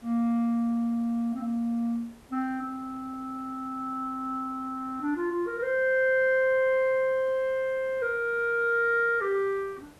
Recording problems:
background hiss; slope -5 dB per octave, SNR 27 dB

